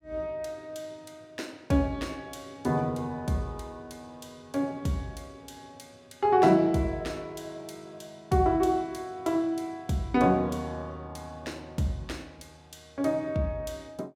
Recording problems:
none

